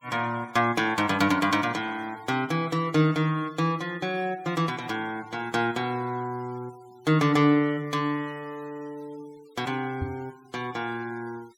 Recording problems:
denoising artefacts; signal-to-artefact ratio 25 dB
microphone thump; at 10 s; peak -1 dB vs average level

